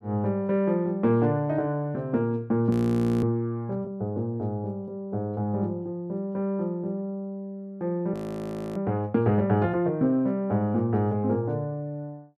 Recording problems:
frozen audio; at 2.5 s for 0.5 s and at 8 s for 0.5 s

